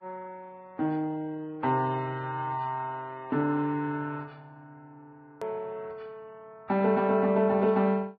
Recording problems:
lossy compression; Vorbis, log-spectral distance 2 dB, nothing above 13.1 kHz
edit click; at 5.5 s

